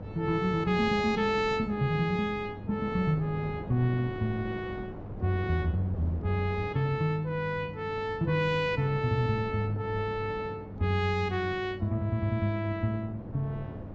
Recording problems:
treble cut off; nothing above 8 kHz
hum; 50 Hz, harmonics up to 600 Hz, SNR 16 dB
wind on the microphone; below 410 Hz, SNR 13 dB

